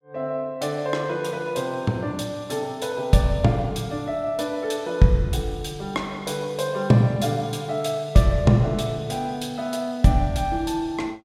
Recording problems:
none

